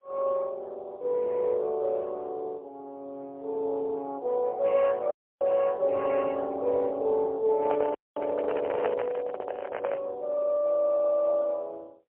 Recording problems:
phone line; 340 Hz to 2.7 kHz, AMR-NB, then MP3
audio cutting out; at 5 s and at 8 s
microphone handling noise; from 7.5 to 10 s; peak +3 dB vs average level

